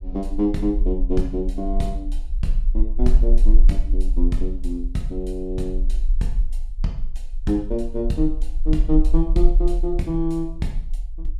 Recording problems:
rumble; below 38 Hz, strongest tone 24 Hz, SNR -1 dB

